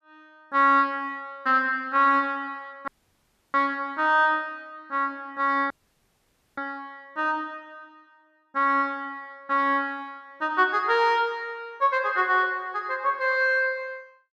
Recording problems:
dropout; at 3 s for 0.5 s and at 5.5 s for 1 s

